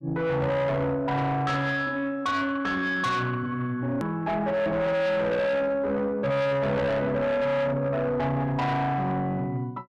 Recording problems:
distorted audio; soft clipping, signal-to-distortion ratio 7 dB
hard cut with a click; at 4 s

